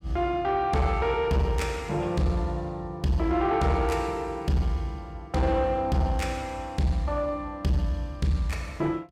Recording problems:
distortion; soft clipping, signal-to-distortion ratio 10 dB

